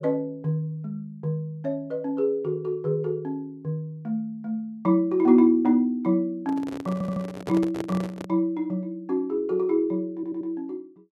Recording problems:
microphone handling noise; from 6.5 to 8.5 s; peak -3 dB vs average level
audio stuttering; at 7 s and at 10 s

